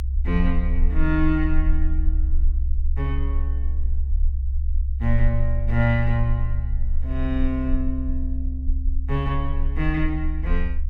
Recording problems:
low-frequency rumble; below 66 Hz, strongest tone 22 Hz, SNR -1 dB

